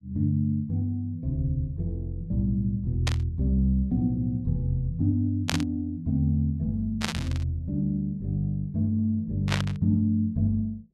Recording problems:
burst of static; 4 times, first at 3 s; peak +4 dB vs average level

